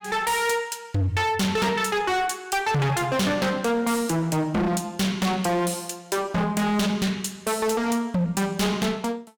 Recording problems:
distorted audio; hard clipping, signal-to-distortion ratio 6 dB

